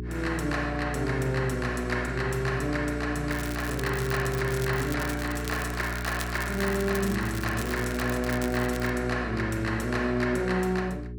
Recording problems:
hum; 60 Hz, harmonics up to 420 Hz, SNR 7 dB
crackle; from 3.5 to 9 s; loose cable, SNR 12 dB

